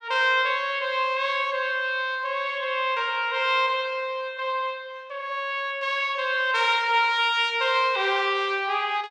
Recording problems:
none

